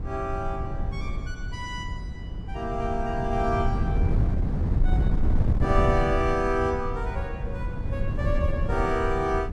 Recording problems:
wind noise; below 120 Hz, SNR 0 dB

